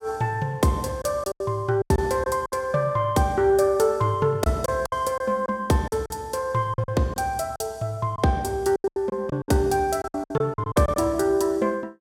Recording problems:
packet loss; 10% of the sound replaced, filled with silence

